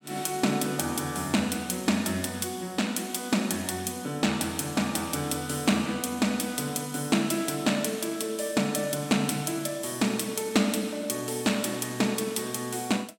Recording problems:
none

